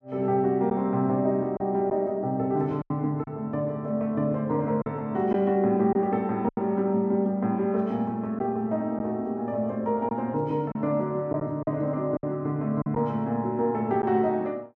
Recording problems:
lost packets; 4% of the sound replaced, filled with silence

